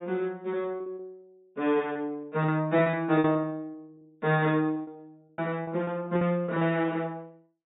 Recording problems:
treble cut off; nothing above 4 kHz
packet loss; 12% of the sound replaced, filled with repeated pitch periods

